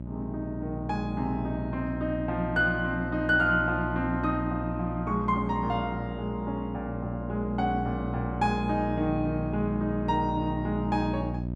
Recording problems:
hum; 60 Hz, harmonics up to 660 Hz, SNR 5 dB

